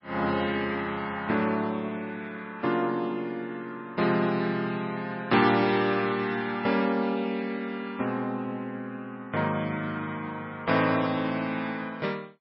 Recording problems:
codec artefacts; MP3, log-spectral distance 2 dB, nothing above 5.2 kHz

